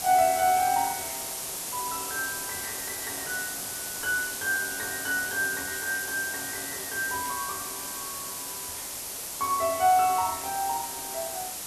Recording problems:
background hiss; SNR 3 dB

